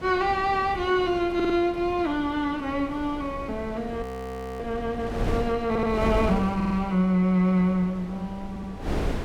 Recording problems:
wind on the microphone; below 430 Hz, SNR 10 dB
audio stuttering; 4 times, first at 1.5 s
frozen audio; at 4 s for 0.5 s

